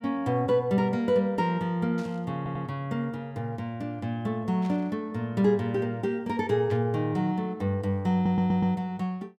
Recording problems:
burst of static; at 2 s, at 4.5 s and at 6.5 s; peak -14 dB vs average level
audio stuttering; at 2.5 s and at 8 s

